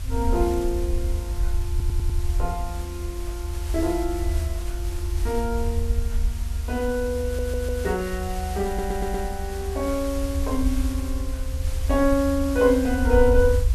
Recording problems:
background hiss; slope -1 dB per octave, SNR 15 dB
rumble; below 76 Hz, SNR 3 dB
stutter; at 1.5 s, at 7 s and at 8.5 s

